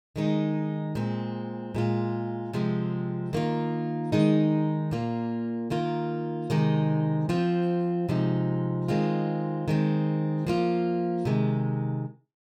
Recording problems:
none

